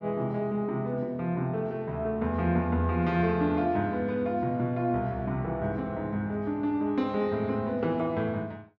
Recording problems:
none

